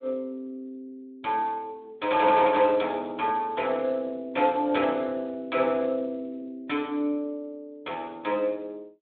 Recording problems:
telephone audio; 260 Hz to 3.6 kHz, Speex

